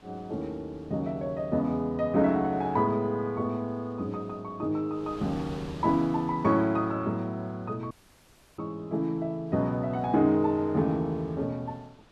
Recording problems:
wind on the microphone; below 1.6 kHz, SNR 24 dB
dropout; at 8 s for 0.5 s

